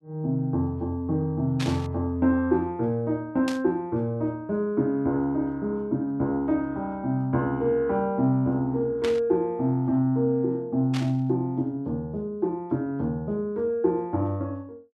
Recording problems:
burst of static; 4 times, first at 1.5 s; peak -4 dB vs average level

